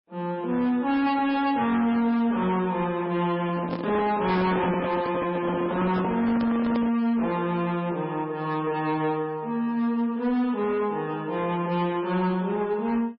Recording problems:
lossy compression; MP3, log-spectral distance 2 dB, nothing above 4.5 kHz
distortion; hard clipping, signal-to-distortion ratio 11 dB
handling noise; from 3.5 to 7 s; peak -1 dB vs average level

